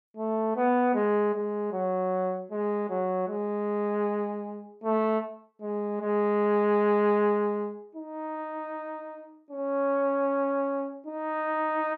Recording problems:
none

